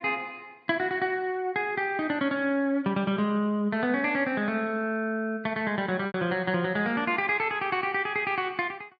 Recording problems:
low-pass filter; nothing above 7 kHz
lost packets; 0.9% of the sound replaced, filled with repeated pitch periods

